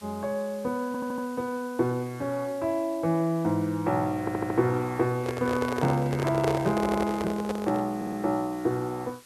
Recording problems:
hiss; slope 0 dB per octave, SNR 23 dB
audio stuttering; 4 times, first at 1 s
handling noise; from 5 to 8 s; peak +3 dB vs average level

